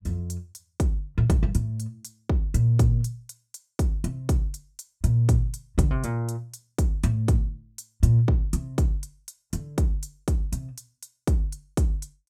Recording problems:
none

